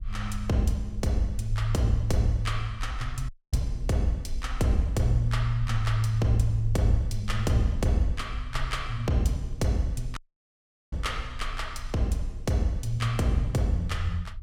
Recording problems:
rumble; below 52 Hz, SNR 10 dB
audio cutting out; at 3.5 s and at 10 s for 1 s

